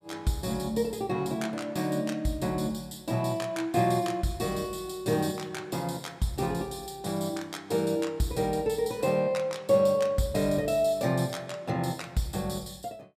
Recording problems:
none

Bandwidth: 14.5 kHz